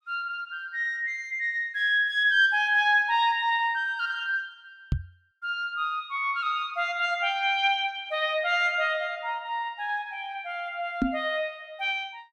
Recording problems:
microphone bump; at 5 s and at 11 s; peak +4 dB vs average level

